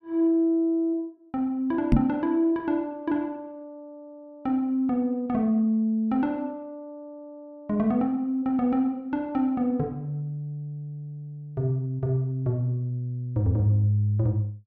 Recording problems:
knock on the microphone; at 2 s; peak +8 dB vs average level

